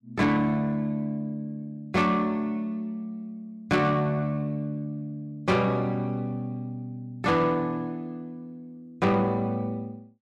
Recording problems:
distortion; soft clipping, signal-to-distortion ratio 11 dB

